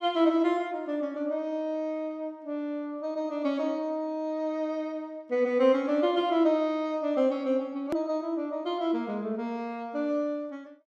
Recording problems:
click at an edit; at 8 s

